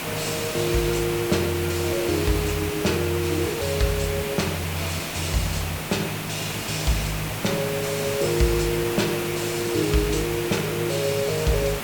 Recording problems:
hiss; SNR 4 dB

